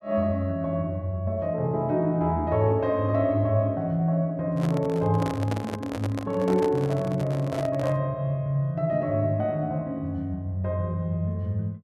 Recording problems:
handling noise; from 4.5 to 8 s; peak -2 dB vs average level

